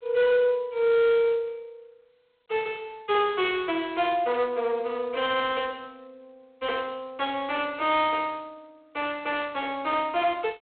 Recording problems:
telephone audio; 320 Hz to 3.8 kHz, G.726
distorted audio; soft clipping, signal-to-distortion ratio 13 dB

